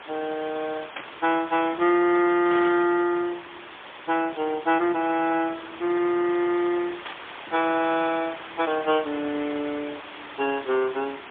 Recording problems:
telephone audio; 190 Hz to 3.4 kHz, AMR-NB, then MP3
background hiss; SNR 14 dB
burst of static; at 1 s, at 2.5 s and at 7 s; peak -6 dB vs average level

